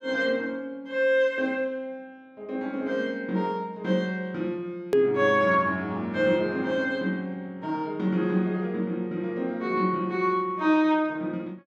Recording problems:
click at an edit; at 5 s

